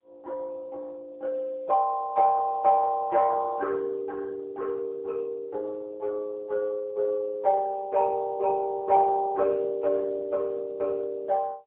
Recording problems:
phone line; 340 Hz to 2.1 kHz, AMR-NB, then MP3

